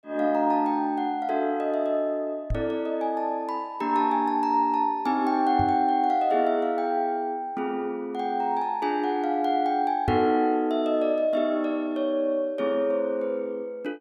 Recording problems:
microphone bump; at 2.5 s, at 5.5 s and at 10 s; peak 0 dB vs average level

